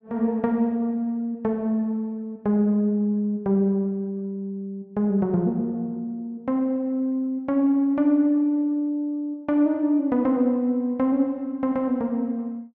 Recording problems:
none

